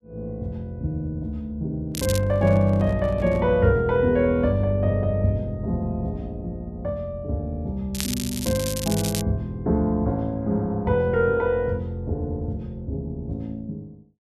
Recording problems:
microphone handling noise; from 2 to 3.5 s; peak -8 dB vs average level
crackle; at 2 s and from 8 to 9 s; loose cable, SNR 7 dB

